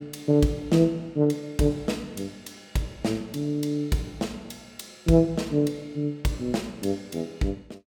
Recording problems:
none

